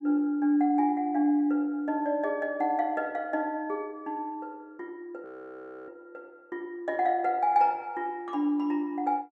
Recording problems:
frozen audio; at 5 s for 0.5 s

